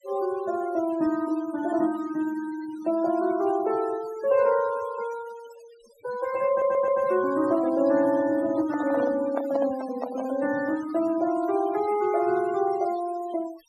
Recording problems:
noise reduction artefacts; signal-to-artefact ratio 17 dB
audio stuttering; at 6.5 s
handling noise; from 8.5 to 10 s; peak -1 dB vs average level

